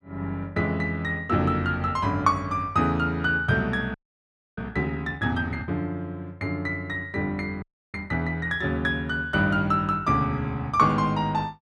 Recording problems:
frozen audio; at 4 s for 0.5 s and at 7.5 s

